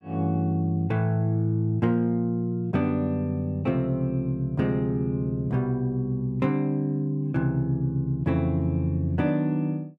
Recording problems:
none

